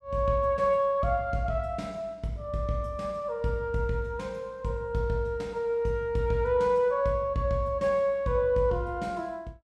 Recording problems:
none

